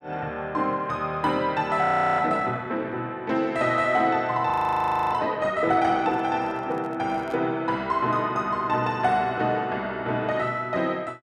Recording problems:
frozen audio; at 2 s and at 4.5 s for 0.5 s
handling noise; from 6 to 7.5 s; peak -11 dB vs average level

